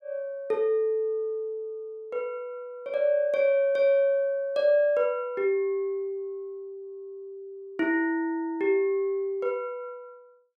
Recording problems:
none

